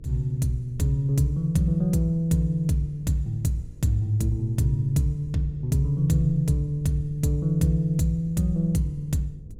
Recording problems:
electrical hum; 50 Hz, harmonics up to 500 Hz, SNR 33 dB
low-frequency rumble; below 110 Hz, SNR 20 dB

